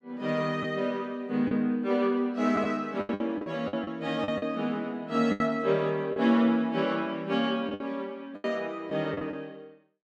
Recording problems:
packet loss; 8% of the sound replaced, filled with the last packet

